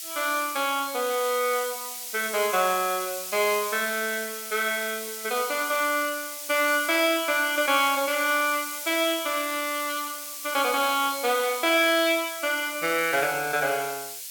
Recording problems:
hiss; slope +7 dB per octave, SNR 8 dB

